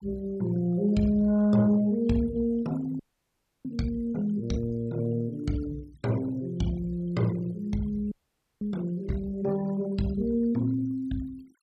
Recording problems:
noise reduction artefacts; signal-to-artefact ratio 23 dB
audio freezing; at 3 s for 0.5 s and at 8 s

